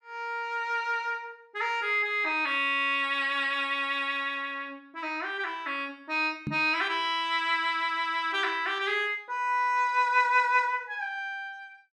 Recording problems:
microphone thump; at 6.5 s; peak -2 dB vs average level

